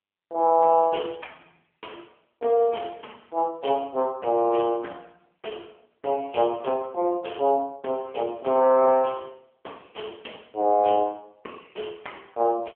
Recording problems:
telephone audio; 300 Hz to 3.6 kHz, AMR-NB

